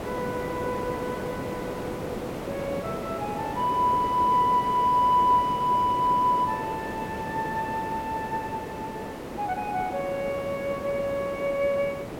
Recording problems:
background hiss; slope -8 dB per octave, SNR 8 dB

